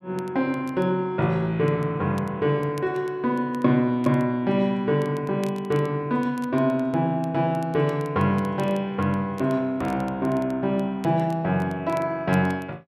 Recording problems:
crackling; vinyl, SNR 27 dB

